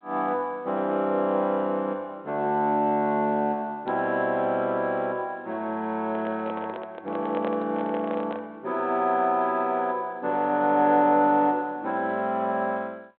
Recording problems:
telephone audio; 220 Hz to 4 kHz, G.726
handling noise; from 6 to 8.5 s; peak -5 dB vs average level

